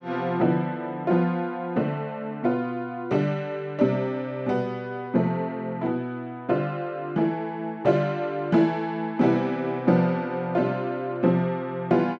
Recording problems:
none

